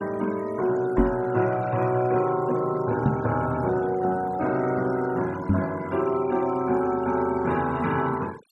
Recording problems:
noise reduction artefacts; signal-to-artefact ratio 20 dB
microphone thump; at 1 s, at 3 s and at 5.5 s; peak +6 dB vs average level

